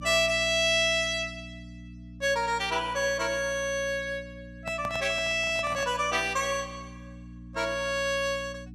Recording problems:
hum; 60 Hz, harmonics up to 300 Hz, SNR 18 dB
microphone handling noise; from 4.5 to 6 s; peak -7 dB vs average level

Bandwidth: 15 kHz